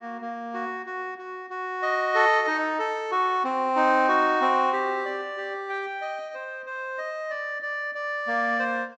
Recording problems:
treble cut off; nothing above 8 kHz

